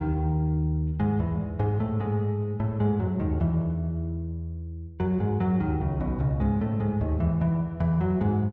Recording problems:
none

